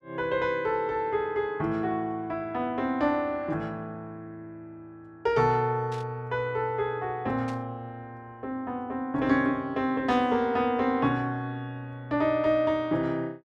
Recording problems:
burst of static; at 6 s, at 7.5 s and at 10 s; peak -13 dB vs average level

